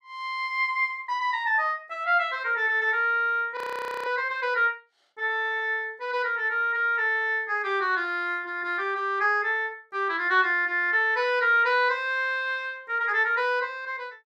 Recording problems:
frozen audio; at 3.5 s

